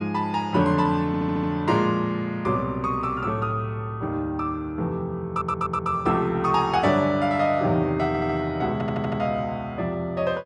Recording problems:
audio stuttering; 4 times, first at 1 s

